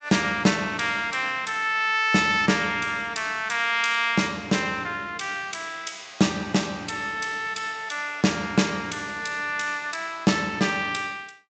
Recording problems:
treble missing; nothing above 8 kHz

